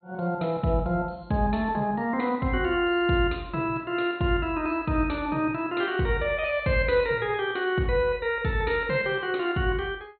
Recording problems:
treble cut off; nothing above 4.3 kHz

